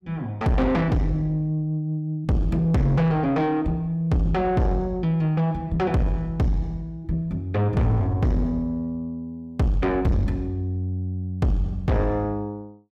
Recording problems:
distorted audio; soft clipping, signal-to-distortion ratio 6 dB

